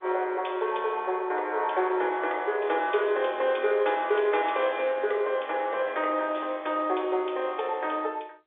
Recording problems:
telephone audio; 320 Hz to 3.8 kHz, G.711

